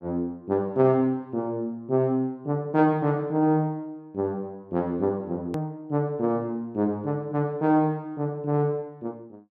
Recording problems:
click at an edit; at 5.5 s

